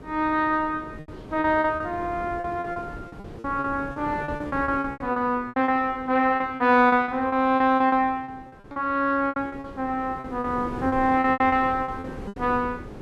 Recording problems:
wind noise; below 450 Hz, SNR 16 dB
lost packets; 15% of the sound replaced, filled with repeated pitch periods

